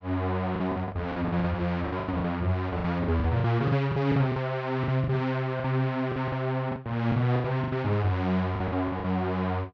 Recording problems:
packet loss; 14% of the sound replaced, filled with the last packet

